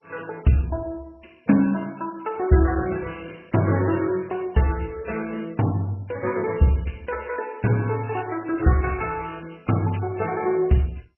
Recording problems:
lossy codec; MP3, then MP2, log-spectral distance 6 dB, nothing above 2.8 kHz

